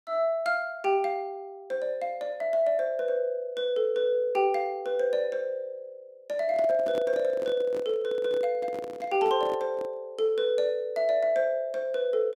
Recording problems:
microphone handling noise; from 6.5 to 10 s; peak -6 dB vs average level

